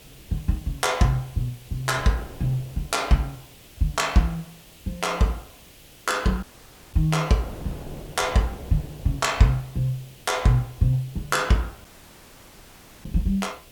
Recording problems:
background hiss; SNR 24 dB
wind noise; below 490 Hz, SNR 21 dB
dropout; at 6.5 s for 0.5 s and at 12 s for 1 s

